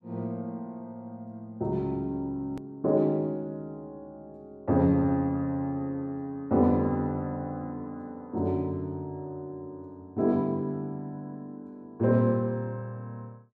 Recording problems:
click at an edit; at 2.5 s

